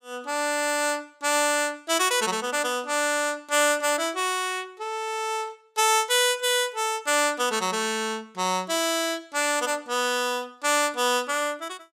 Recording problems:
none

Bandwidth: 15.5 kHz